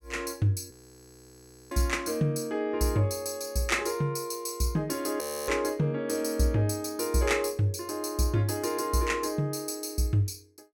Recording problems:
audio freezing; at 0.5 s for 1 s and at 5 s

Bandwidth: 18 kHz